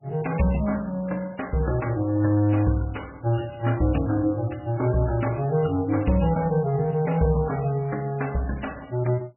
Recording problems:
lossy compression; MP3, log-spectral distance 5 dB, nothing above 2.9 kHz

